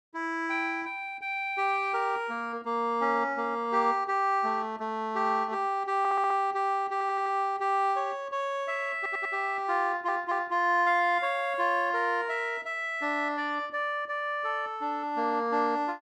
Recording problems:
stutter; 4 times, first at 6 s

